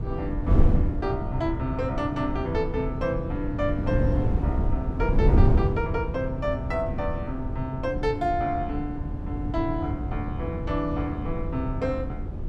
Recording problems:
wind noise; below 140 Hz, SNR -1 dB

